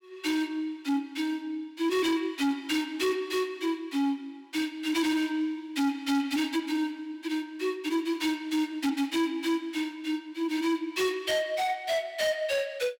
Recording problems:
distorted audio; hard clipping, signal-to-distortion ratio 11 dB

